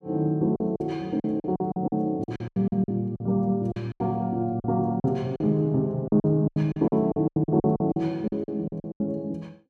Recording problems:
packet loss; 16% of the sound replaced, filled with silence

